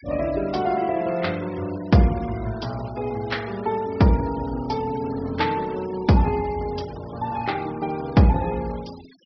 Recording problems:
treble missing; nothing above 5.5 kHz
noise reduction artefacts; signal-to-artefact ratio 21 dB

